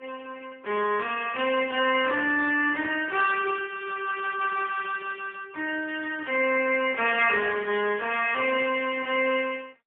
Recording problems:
phone line; 280 Hz to 3.3 kHz, AMR-NB, then MP3

